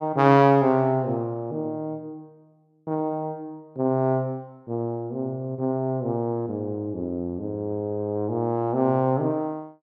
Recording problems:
none

